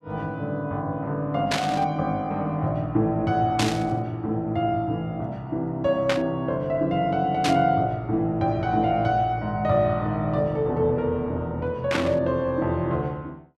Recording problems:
burst of static; 5 times, first at 1.5 s; peak +3 dB vs average level

